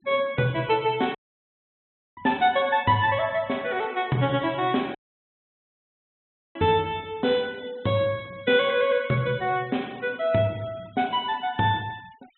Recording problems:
treble missing; nothing above 3.9 kHz
noise reduction artefacts; signal-to-artefact ratio 26 dB
dropout; at 1 s for 1 s and at 5 s for 1.5 s

